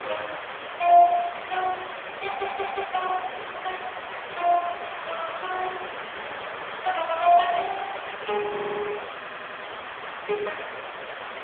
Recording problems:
phone line; 340 Hz to 3.3 kHz, AMR-NB
background hiss; SNR 9 dB
audio stuttering; at 2.5 s, at 8.5 s and at 9 s

